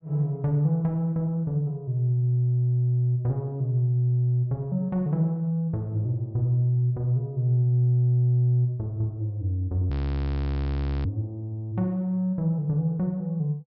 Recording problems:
low-pass filter; nothing above 5.5 kHz
frozen audio; at 10 s for 1 s

